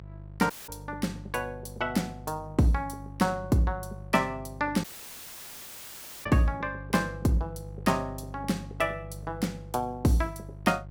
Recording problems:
hum; 50 Hz, harmonics up to 700 Hz, SNR 14 dB
audio cutting out; at 0.5 s and at 5 s for 1.5 s

